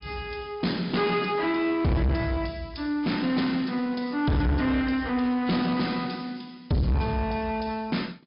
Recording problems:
low-pass filter; nothing above 5.2 kHz
codec artefacts; AAC, log-spectral distance 3 dB
distorted audio; soft clipping, signal-to-distortion ratio 6 dB

